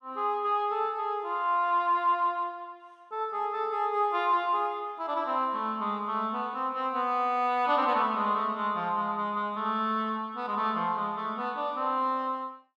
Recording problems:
none

